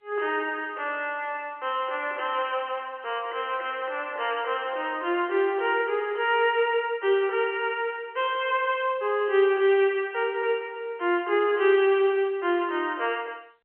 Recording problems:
phone line; 320 Hz to 3.1 kHz, G.711

